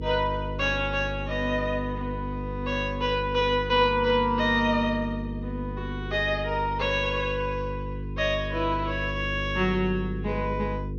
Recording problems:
treble cut off; nothing above 6.6 kHz
hum; 50 Hz, harmonics up to 500 Hz, SNR 8 dB

